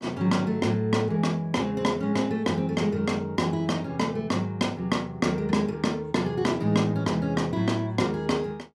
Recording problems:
none

